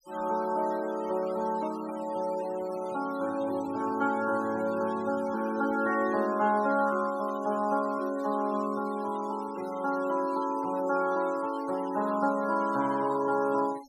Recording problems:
denoising artefacts; signal-to-artefact ratio 20 dB

